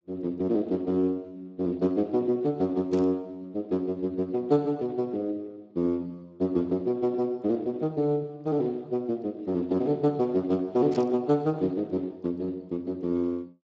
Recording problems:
codec artefacts; Speex, log-spectral distance 2 dB, nothing above 7.3 kHz
burst of static; at 3 s and at 11 s; peak -9 dB vs average level

